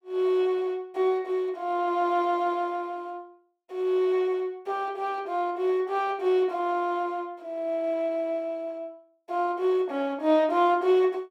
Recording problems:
none

